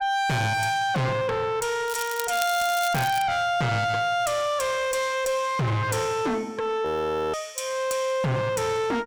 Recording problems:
distorted audio; soft clipping, signal-to-distortion ratio 5 dB
crackle; from 2 to 3 s; loose cable, SNR 10 dB
audio freezing; at 7 s

